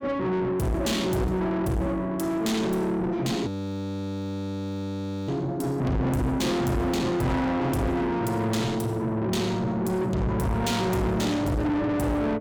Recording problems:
distortion; soft clipping, signal-to-distortion ratio 6 dB
frozen audio; at 3.5 s for 2 s

